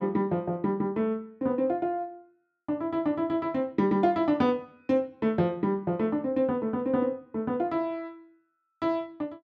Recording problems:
none

